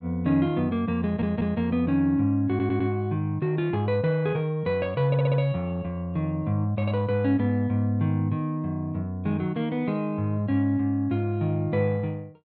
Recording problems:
audio stuttering; at 1 s, at 2.5 s and at 5 s

